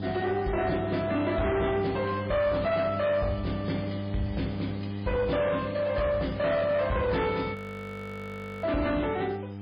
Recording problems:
lossy compression; MP3, log-spectral distance 5 dB, nothing above 17.1 kHz
distortion; soft clipping, signal-to-distortion ratio 10 dB
hum; 50 Hz, harmonics up to 900 Hz, SNR 8 dB
hiss; SNR 27 dB
frozen audio; at 7.5 s for 1 s

